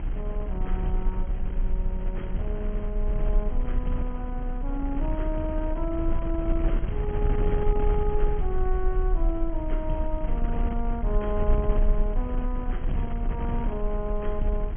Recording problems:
low-pass filter; nothing above 3.3 kHz
low-frequency rumble; below 34 Hz, strongest tone 32 Hz, SNR -2 dB
wind noise; below 140 Hz, SNR 1 dB

